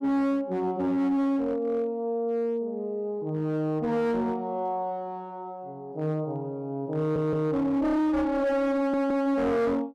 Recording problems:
distorted audio; hard clipping, signal-to-distortion ratio 10 dB
audio stuttering; at 7 s and at 9 s

